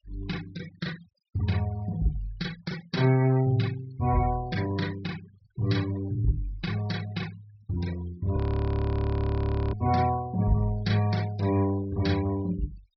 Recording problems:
low-pass filter; nothing above 5.5 kHz
noise reduction artefacts; signal-to-artefact ratio 17 dB
audio freezing; at 8.5 s for 1.5 s

